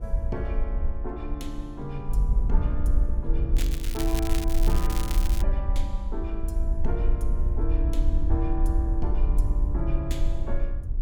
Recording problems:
wind on the microphone; below 54 Hz, SNR -7 dB
crackle; from 3.5 to 5.5 s; loose cable, SNR 3 dB

